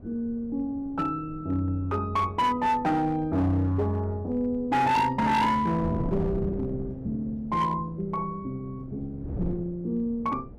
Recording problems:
distorted audio; hard clipping, signal-to-distortion ratio 11 dB
wind on the microphone; below 270 Hz, SNR 13 dB

